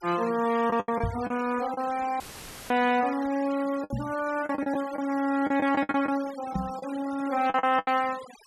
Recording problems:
denoising artefacts; signal-to-artefact ratio 17 dB
lost packets; 10% of the sound replaced, filled with the last packet
microphone bump; at 1 s, at 4 s and at 6.5 s; peak +1 dB vs average level
audio cutting out; at 2 s for 0.5 s; filled with static

